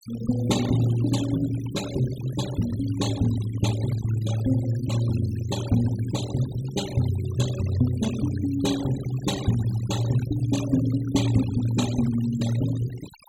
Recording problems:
noise reduction artefacts; signal-to-artefact ratio 13 dB

